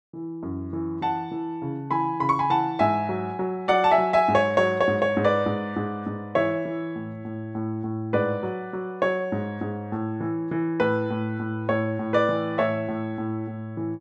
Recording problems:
none

